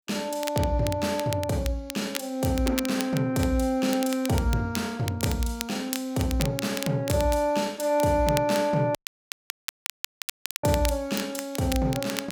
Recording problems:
crackling; vinyl, SNR 11 dB
dropout; at 9 s for 1.5 s

